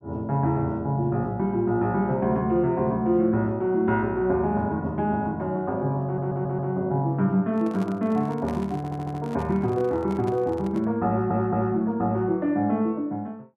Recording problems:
audio stuttering; at 6 s, at 9 s and at 11 s
microphone handling noise; from 7.5 to 11 s; peak -9 dB vs average level

